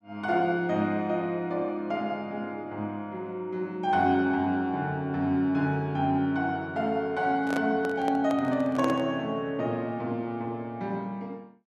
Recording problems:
handling noise; from 7.5 to 9 s; peak -1 dB vs average level

